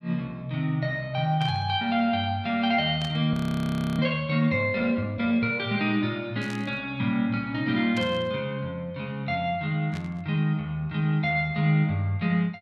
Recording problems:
static burst; 5 times, first at 1.5 s; peak -9 dB vs average level
frozen audio; at 3.5 s for 0.5 s

